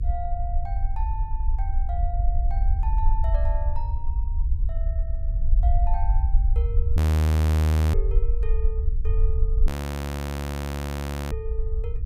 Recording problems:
hum; 50 Hz, harmonics up to 500 Hz, SNR 16 dB
low-frequency rumble; below 76 Hz, SNR -13 dB
audio freezing; at 7 s for 1 s and at 9.5 s for 1.5 s

